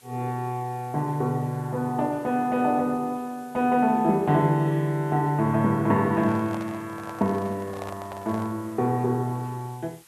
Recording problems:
hiss; slope 0 dB per octave, SNR 27 dB
microphone handling noise; from 6 to 8.5 s; peak -8 dB vs average level

